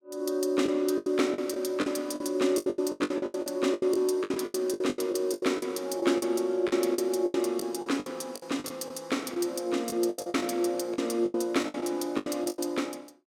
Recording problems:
lost packets; 18% of the sound replaced, filled with the last packet

